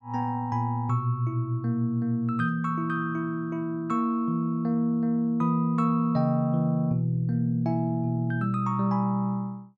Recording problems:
none

